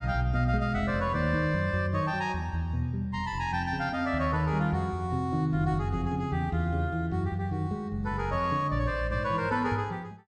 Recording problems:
none

